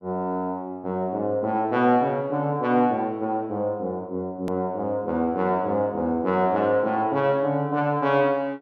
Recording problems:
edit click; at 4.5 s

